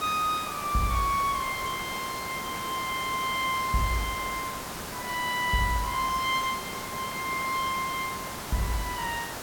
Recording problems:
hiss; slope -4 dB per octave, SNR 7 dB

